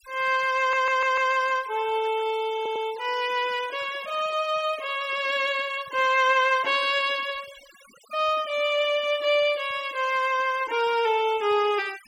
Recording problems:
denoising artefacts; signal-to-artefact ratio 21 dB
stutter; at 0.5 s and at 2.5 s

